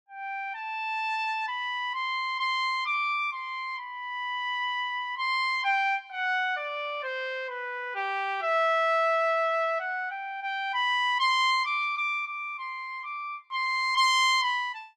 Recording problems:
none

